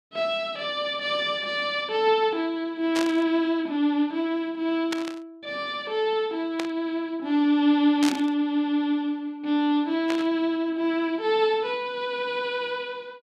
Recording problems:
burst of static; 5 times, first at 3 s; peak -1 dB vs average level

